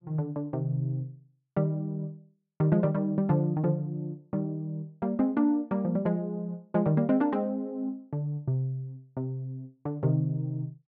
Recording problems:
none

